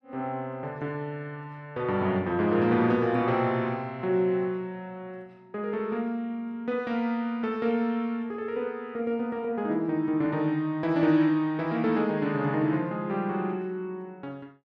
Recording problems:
none

